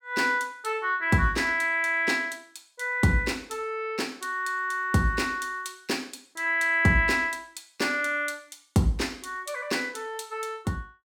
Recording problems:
none

